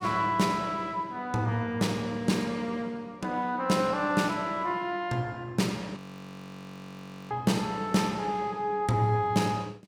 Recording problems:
audio freezing; at 6 s for 1.5 s

